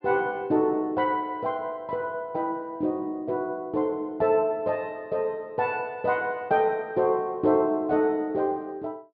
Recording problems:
low-pass filter; nothing above 5.1 kHz

